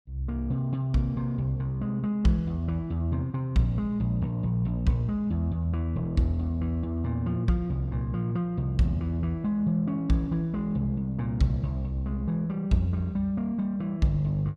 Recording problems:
none

